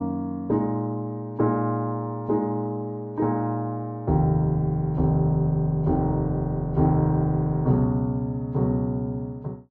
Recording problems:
low-pass filter; nothing above 8 kHz

